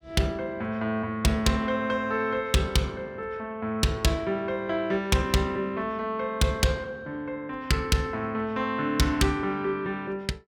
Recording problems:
distorted audio; hard clipping, uneven, signal-to-distortion ratio 12 dB

